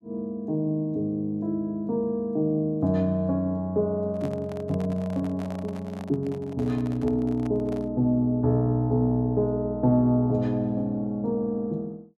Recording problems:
microphone handling noise; from 4 to 8 s; peak -10 dB vs average level

